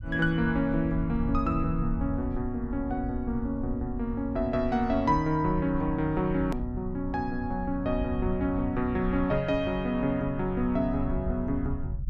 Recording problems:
rumble; below 90 Hz, SNR 8 dB
edit click; at 6.5 s

